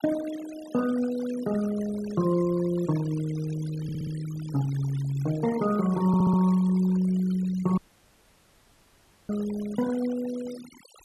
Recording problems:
denoising artefacts; signal-to-artefact ratio 17 dB
stutter; at 4 s and at 6 s
dropout; at 8 s for 1.5 s

